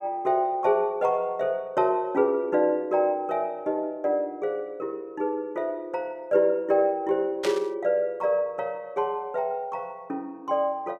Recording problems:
static burst; at 7.5 s; peak -2 dB vs average level

